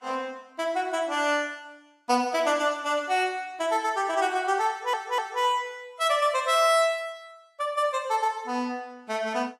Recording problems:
lossy codec; Vorbis, log-spectral distance 2 dB, nothing above 10.7 kHz
audio stuttering; at 4.5 s

